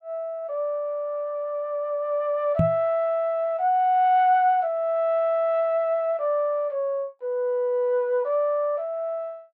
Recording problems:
knock on the microphone; at 2.5 s; peak +5 dB vs average level

